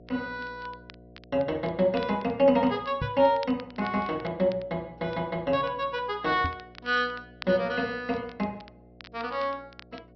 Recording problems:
low-pass filter; nothing above 5.5 kHz
hum; 60 Hz, harmonics up to 720 Hz, SNR 25 dB
crackling; vinyl, SNR 23 dB
knock on the microphone; at 3 s and at 6.5 s; peak -1 dB vs average level

